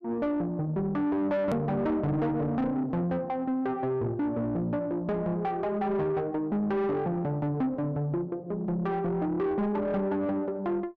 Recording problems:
distortion; soft clipping, signal-to-distortion ratio 10 dB
hard cut with a click; at 1.5 s

